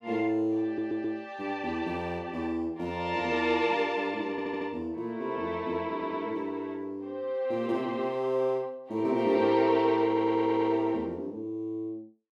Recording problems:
audio stuttering; 4 times, first at 0.5 s

